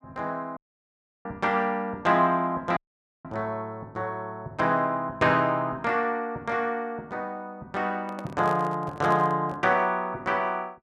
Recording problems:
audio cutting out; at 0.5 s for 0.5 s and at 3 s
handling noise; from 8 to 9.5 s; peak -6 dB vs average level

